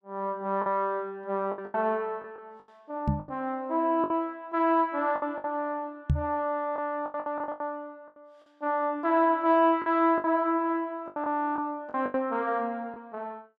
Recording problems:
lost packets; 9% of the sound replaced, filled with the last packet
microphone bump; at 3 s and at 6 s; peak +7 dB vs average level

